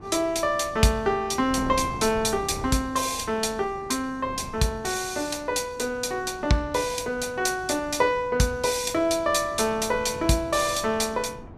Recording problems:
wind on the microphone; below 400 Hz, SNR 16 dB

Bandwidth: 14.5 kHz